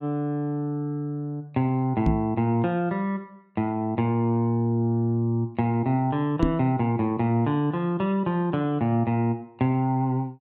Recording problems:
microphone thump; at 2 s and at 6.5 s; peak +5 dB vs average level

